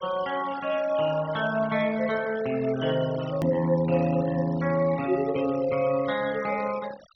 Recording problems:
treble missing; nothing above 5.9 kHz
denoising artefacts; signal-to-artefact ratio 16 dB
edit click; at 3.5 s

